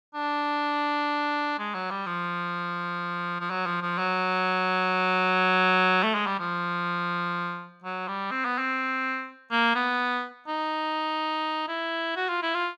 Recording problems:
none

